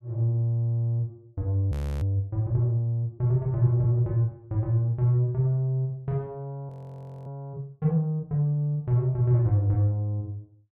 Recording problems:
audio freezing; at 1.5 s and at 6.5 s for 0.5 s

